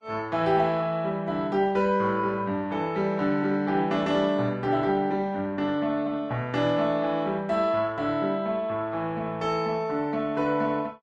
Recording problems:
codec artefacts; Vorbis, log-spectral distance 2 dB

